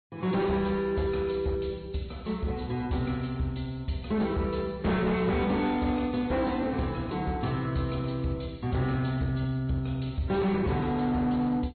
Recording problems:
treble cut off; nothing above 4.3 kHz
codec artefacts; AAC, log-spectral distance 2 dB
distortion; hard clipping, signal-to-distortion ratio 11 dB

